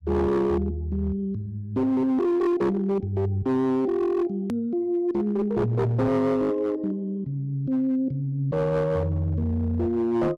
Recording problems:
distorted audio; hard clipping, signal-to-distortion ratio 11 dB
hard cut with a click; at 4.5 s

